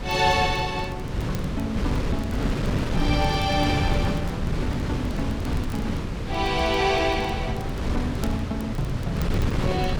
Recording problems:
wind noise; below 280 Hz, SNR 1 dB
crackle; vinyl, SNR 23 dB

